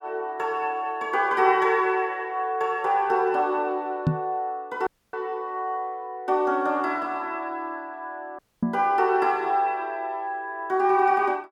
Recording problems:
microphone bump; at 4 s and at 8.5 s; peak +6 dB vs average level
audio cutting out; at 5 s and at 8.5 s

